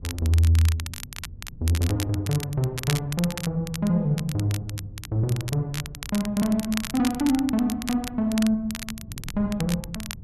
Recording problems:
wind on the microphone; below 140 Hz, SNR 18 dB
crackle; vinyl, SNR 11 dB

